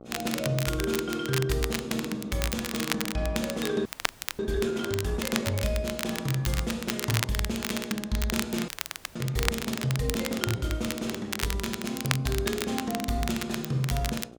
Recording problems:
electrical hum; 60 Hz, harmonics up to 1.4 kHz, SNR 17 dB
crackle; vinyl, SNR 4 dB
audio freezing; at 4 s for 0.5 s and at 8.5 s

